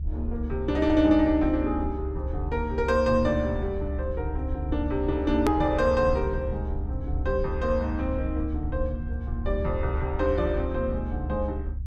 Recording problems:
low-frequency rumble; below 72 Hz, strongest tone 70 Hz, SNR 5 dB
edit click; at 5.5 s

